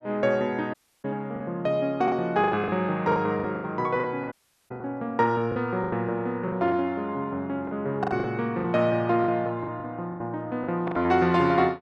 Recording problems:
lost packets; 12% of the sound replaced, filled with the last packet
dropout; at 0.5 s and at 4.5 s

